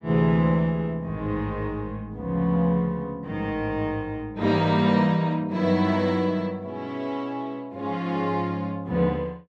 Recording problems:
none

